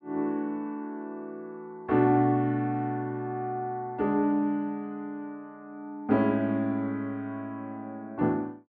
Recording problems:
none

